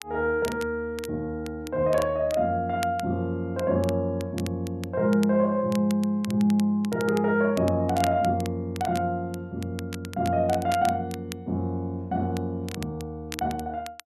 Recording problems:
crackle; vinyl, SNR 17 dB

